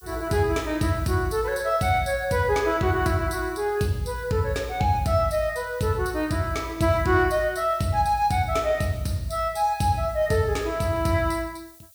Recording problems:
hiss; SNR 25 dB

